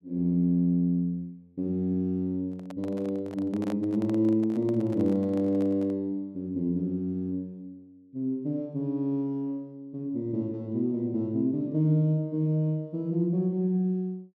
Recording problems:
microphone handling noise; from 2.5 to 6 s; peak -7 dB vs average level

